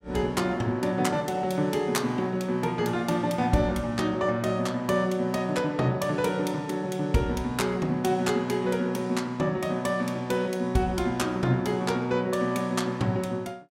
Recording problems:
none

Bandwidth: 16 kHz